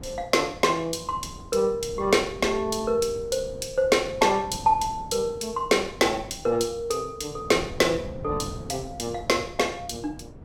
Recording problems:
wind on the microphone; below 290 Hz, SNR 16 dB

